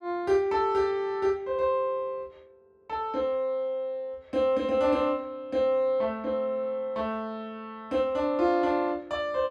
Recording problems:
none

